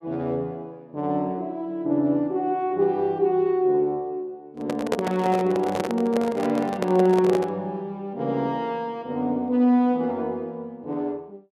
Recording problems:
microphone handling noise; from 4.5 to 7.5 s; peak +3 dB vs average level

